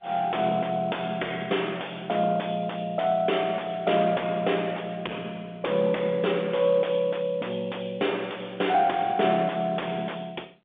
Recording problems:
phone line; 240 Hz to 3.5 kHz, G.711
distorted audio; soft clipping, signal-to-distortion ratio 6 dB

